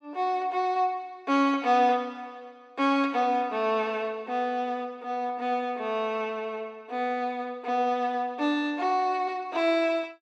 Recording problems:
none

